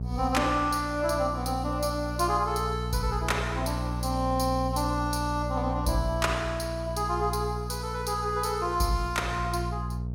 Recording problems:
electrical hum; 60 Hz, harmonics up to 480 Hz, SNR 5 dB

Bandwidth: 16.5 kHz